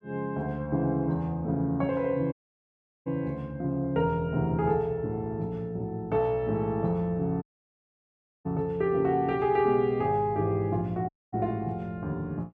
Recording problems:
dropout; at 2.5 s for 0.5 s, at 7.5 s for 1 s and at 11 s

